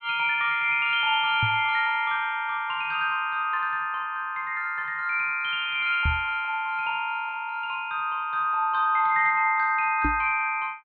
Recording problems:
treble cut off; nothing above 4.3 kHz
microphone bump; at 1.5 s, at 6 s and at 10 s; peak 0 dB vs average level

